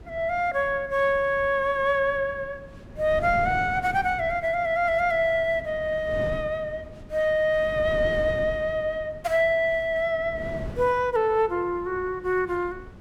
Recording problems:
wind on the microphone; below 300 Hz, SNR 16 dB

